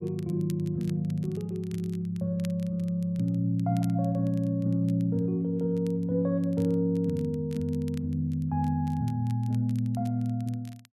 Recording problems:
crackle; vinyl, SNR 27 dB

